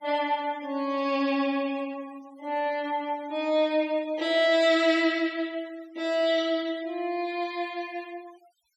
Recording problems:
denoising artefacts; signal-to-artefact ratio 24 dB

